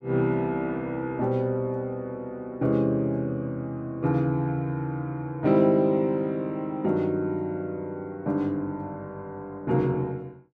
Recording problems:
none

